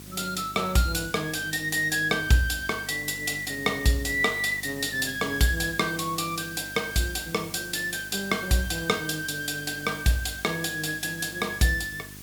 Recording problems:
electrical hum; 50 Hz, harmonics up to 750 Hz, SNR 20 dB
hiss; slope +2 dB per octave, SNR 16 dB

